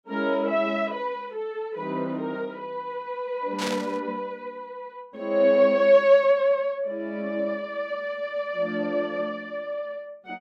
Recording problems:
burst of static; at 3.5 s; peak -2 dB vs average level

